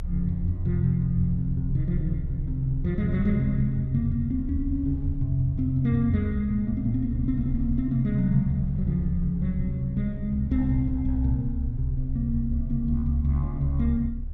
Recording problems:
rumble; below 70 Hz, strongest tone 30 Hz, SNR 9 dB

